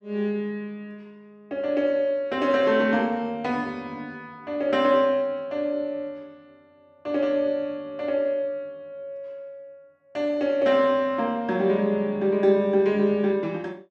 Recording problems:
none

